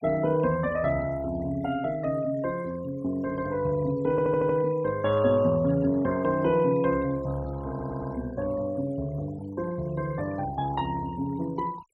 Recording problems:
denoising artefacts; signal-to-artefact ratio 21 dB
audio stuttering; at 4 s and at 7.5 s

